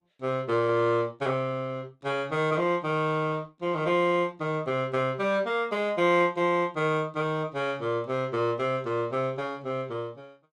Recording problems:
codec artefacts; Opus, log-spectral distance 2 dB

